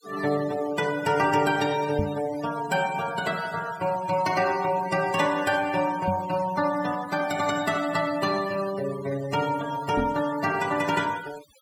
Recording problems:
denoising artefacts; signal-to-artefact ratio 15 dB
microphone thump; at 2 s, at 6 s and at 10 s; peak +1 dB vs average level

